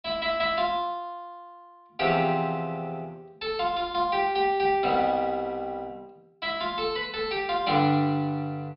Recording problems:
low-pass filter; nothing above 5.5 kHz

